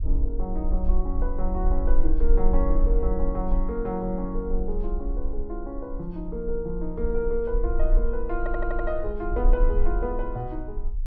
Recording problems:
low-frequency rumble; below 38 Hz, strongest tone 18 Hz, SNR -1 dB
audio stuttering; at 8.5 s

